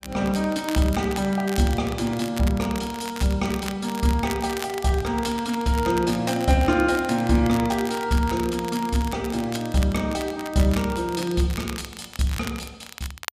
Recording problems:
crackling; vinyl, SNR 14 dB

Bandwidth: 14.5 kHz